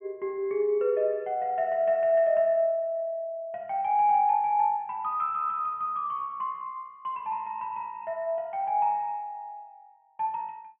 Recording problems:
low-pass filter; nothing above 3.3 kHz

